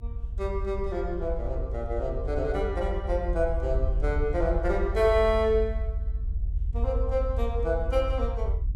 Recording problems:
rumble; below 60 Hz, SNR 3 dB

